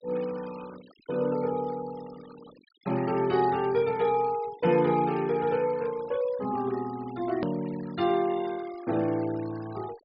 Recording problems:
low-pass filter; nothing above 5.5 kHz
denoising artefacts; signal-to-artefact ratio 20 dB
hard cut with a click; at 7.5 s

